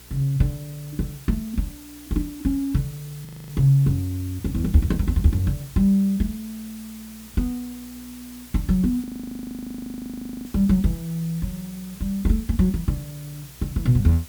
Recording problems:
electrical hum; 60 Hz, harmonics up to 480 Hz, SNR 28 dB
background hiss; slope 0 dB per octave, SNR 19 dB
audio freezing; at 3.5 s and at 9 s for 1.5 s

